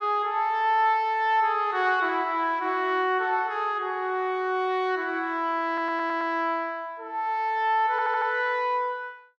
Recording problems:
stutter; at 5.5 s and at 8 s

